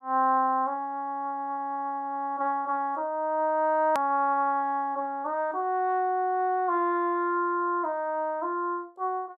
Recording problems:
edit click; at 4 s

